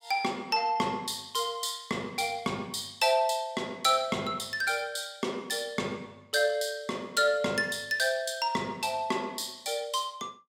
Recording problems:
none

